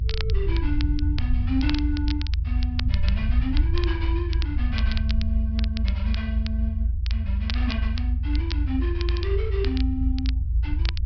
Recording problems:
treble missing; nothing above 5.5 kHz
rumble; below 80 Hz, SNR -7 dB
crackle; vinyl, SNR 7 dB

